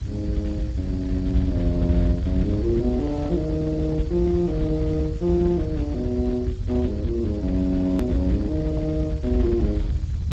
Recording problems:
lossy codec; Speex, log-spectral distance 2 dB, nothing above 14.6 kHz
hum; 60 Hz, harmonics up to 540 Hz, SNR 23 dB
background hiss; SNR 27 dB
rumble; below 110 Hz, SNR 2 dB
hard cut with a click; at 8 s

